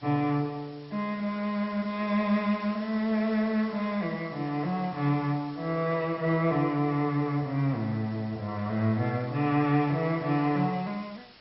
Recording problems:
codec artefacts; MP2, log-spectral distance 6 dB, nothing above 5.5 kHz
background hiss; slope -1 dB per octave, SNR 23 dB

